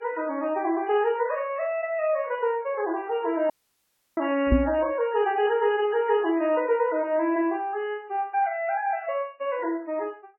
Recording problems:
codec artefacts; MP3, log-spectral distance 2 dB, nothing above 2.9 kHz
dropout; at 3.5 s for 0.5 s
microphone thump; at 4.5 s; peak +9 dB vs average level

